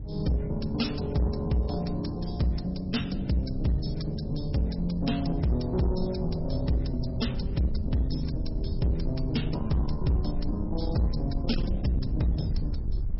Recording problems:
lossy codec; MP3, log-spectral distance 4 dB, nothing above 5.5 kHz
distorted audio; soft clipping, signal-to-distortion ratio 11 dB
rumble; below 82 Hz, SNR 7 dB
wind on the microphone; below 180 Hz, SNR 17 dB

